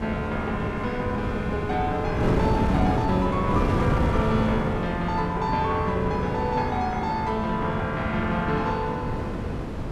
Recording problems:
wind on the microphone; below 380 Hz, SNR 2 dB

